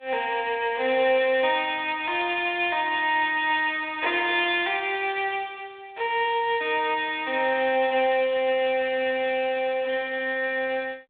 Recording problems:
phone line; 280 Hz to 3.6 kHz, G.726

